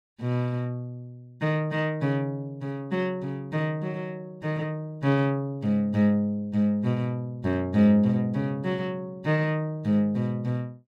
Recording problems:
none

